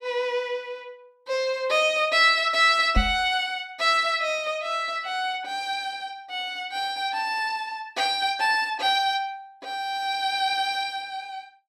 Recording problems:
microphone thump; at 3 s; peak +4 dB vs average level

